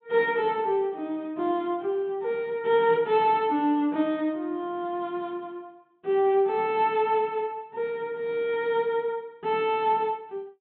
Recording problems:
treble cut off; nothing above 4 kHz

